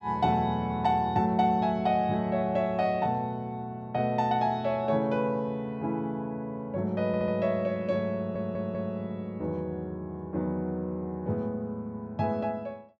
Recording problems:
stutter; at 7 s and at 8 s

